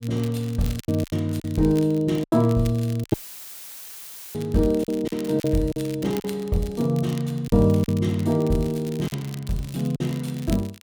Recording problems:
crackling; vinyl, SNR 19 dB
lost packets; 8% of the sound replaced, filled with silence
audio cutting out; at 3 s for 1 s; filled with static

